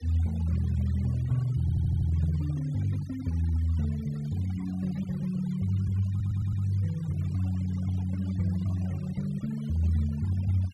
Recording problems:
noise reduction artefacts; signal-to-artefact ratio 23 dB
stutter; at 1.5 s and at 6 s

